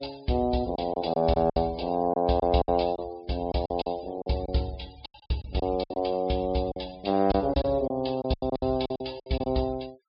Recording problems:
treble missing; nothing above 5.5 kHz
denoising artefacts; signal-to-artefact ratio 23 dB
lost packets; 11% of the sound replaced, filled with silence

